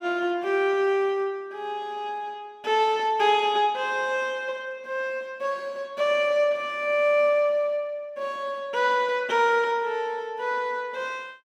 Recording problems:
none

